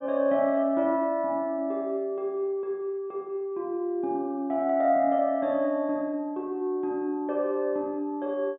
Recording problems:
low-pass filter; nothing above 3.7 kHz

